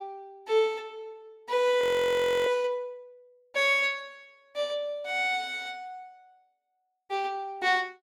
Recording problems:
audio freezing; at 2 s for 0.5 s

